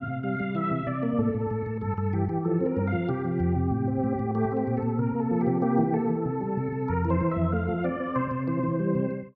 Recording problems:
none

